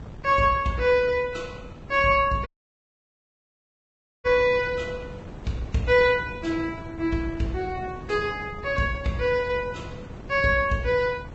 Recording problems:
low-pass filter; nothing above 7.8 kHz
lossy compression; Vorbis, log-spectral distance 3 dB
wind on the microphone; below 330 Hz, SNR 16 dB
audio cutting out; at 2.5 s for 2 s

